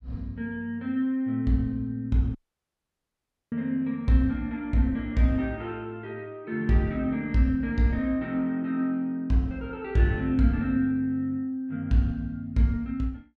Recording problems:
audio cutting out; at 2.5 s for 1 s

